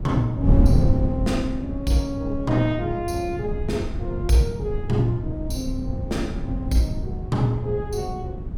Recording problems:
wind on the microphone; below 150 Hz, SNR 2 dB

